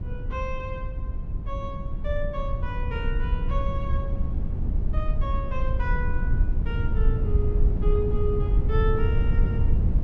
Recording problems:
low-frequency rumble; below 82 Hz, SNR -7 dB

